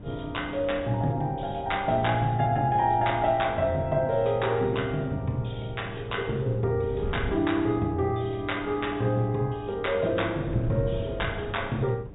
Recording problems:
treble cut off; nothing above 4 kHz
hum; 50 Hz, harmonics up to 700 Hz, SNR 20 dB
wind noise; below 180 Hz, SNR 14 dB

